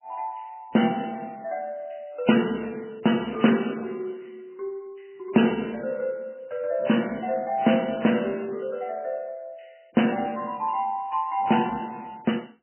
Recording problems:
lossy codec; MP3, log-spectral distance 7 dB, nothing above 3 kHz

